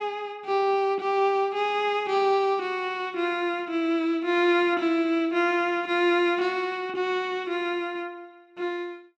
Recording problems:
none

